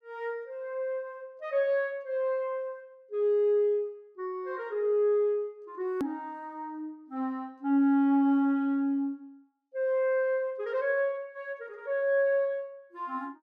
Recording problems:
hard cut with a click; at 6 s

